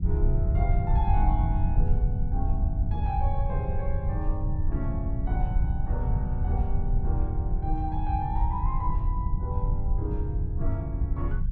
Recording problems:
rumble; below 88 Hz, SNR -8 dB

